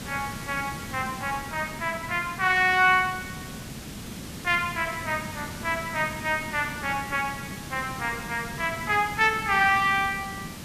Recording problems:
hiss; SNR 12 dB

